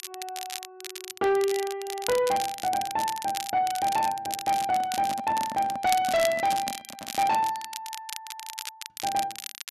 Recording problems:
distortion; soft clipping, signal-to-distortion ratio 10 dB
crackling; vinyl, SNR 10 dB
handling noise; from 4.5 to 7.5 s; peak -6 dB vs average level

